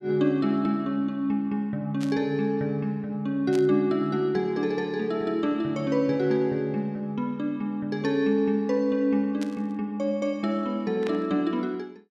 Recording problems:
burst of static; 4 times, first at 2 s; peak -8 dB vs average level

